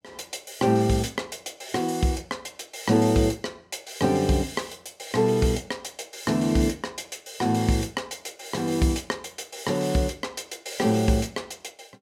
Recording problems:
none

